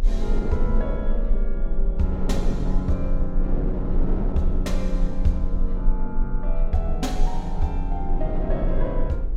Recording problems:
low-frequency rumble; below 32 Hz, strongest tone 22 Hz, SNR -1 dB
wind noise; below 400 Hz, SNR 3 dB

